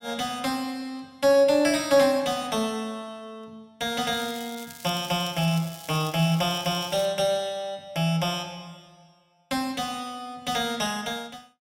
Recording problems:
crackle; from 4 to 7 s; loose cable, SNR 17 dB

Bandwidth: 16.5 kHz